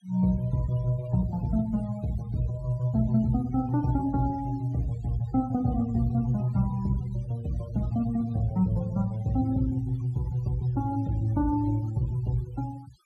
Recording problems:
noise reduction artefacts; signal-to-artefact ratio 22 dB

